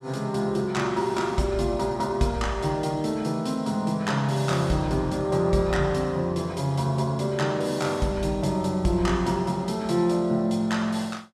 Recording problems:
none

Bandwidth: 14.5 kHz